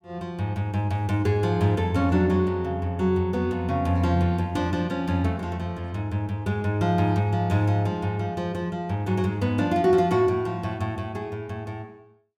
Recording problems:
none

